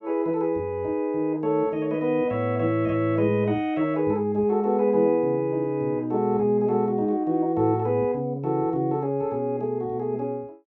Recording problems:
none

